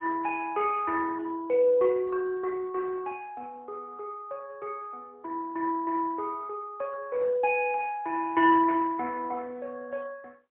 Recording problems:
telephone audio; 280 Hz to 2.2 kHz, AMR-NB, then MP3

